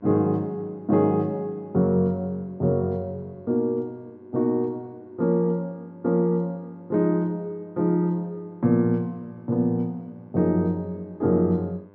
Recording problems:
low-pass filter; nothing above 6.9 kHz
hum; 50 Hz, harmonics up to 2.1 kHz, SNR 29 dB

